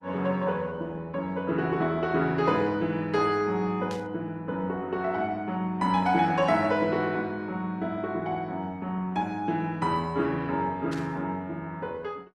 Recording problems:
lossy codec; Opus, log-spectral distance 2 dB, nothing above 11.3 kHz
burst of static; at 4 s and at 11 s; peak -11 dB vs average level

